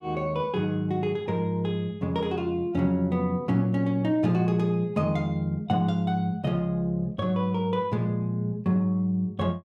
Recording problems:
none

